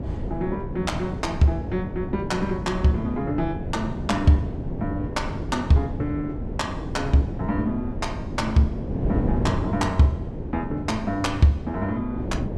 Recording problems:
wind on the microphone; below 290 Hz, SNR 5 dB

